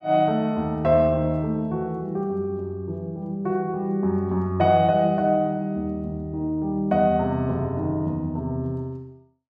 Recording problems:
none

